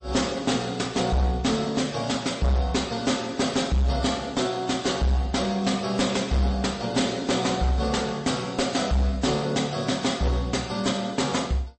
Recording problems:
codec artefacts; MP3, log-spectral distance 4 dB, nothing above 8.2 kHz
distortion; hard clipping, uneven, signal-to-distortion ratio 11 dB

